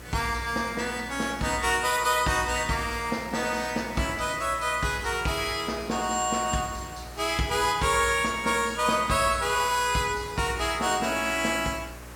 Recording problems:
hum; 60 Hz, harmonics up to 600 Hz, SNR 20 dB
background hiss; SNR 20 dB

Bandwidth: 17 kHz